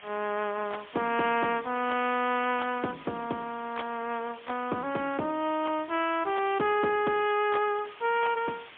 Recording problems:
telephone audio; 190 Hz to 3.4 kHz, AMR-NB, then MP3
hiss; SNR 19 dB

